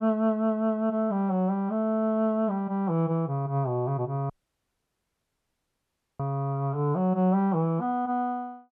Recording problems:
dropout; at 4.5 s for 2 s

